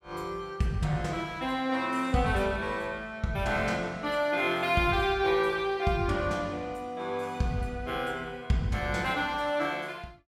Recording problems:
none

